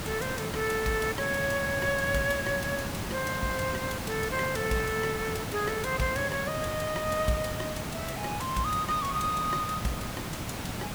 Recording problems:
background hiss; slope -4 dB per octave, SNR 4 dB

